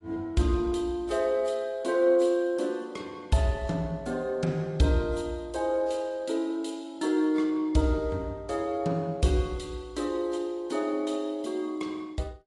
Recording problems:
lossy compression; AAC, log-spectral distance 2 dB, nothing above 10.4 kHz

